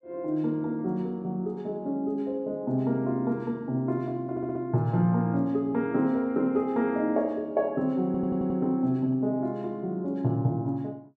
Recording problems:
stutter; at 4.5 s and at 8 s

